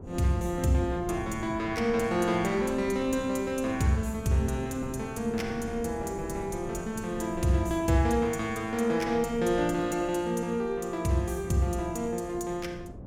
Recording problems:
wind on the microphone; below 280 Hz, SNR 14 dB

